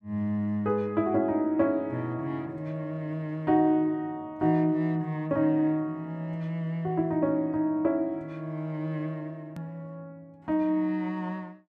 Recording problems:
edit click; at 9.5 s

